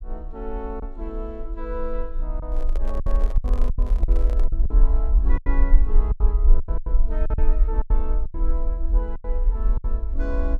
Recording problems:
low-frequency rumble; below 44 Hz, strongest tone 20 Hz, SNR -11 dB
packet loss; 10% of the sound replaced, filled with silence
microphone handling noise; from 2.5 to 4.5 s; peak +1 dB vs average level

